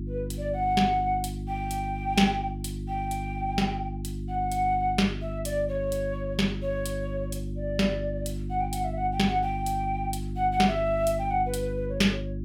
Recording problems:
hum; 50 Hz, harmonics up to 350 Hz, SNR 6 dB

